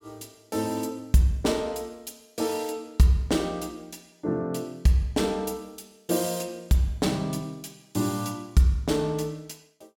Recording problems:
none

